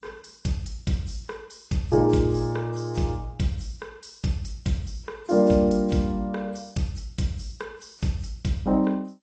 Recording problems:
lossy codec; G.722, then AAC, log-spectral distance 5 dB, nothing above 7.6 kHz

